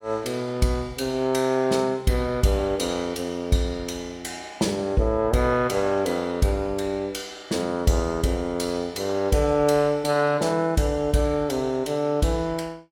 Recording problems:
none

